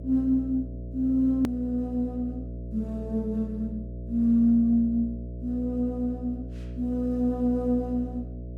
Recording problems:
electrical hum; 60 Hz, harmonics up to 660 Hz, SNR 11 dB
edit click; at 1.5 s

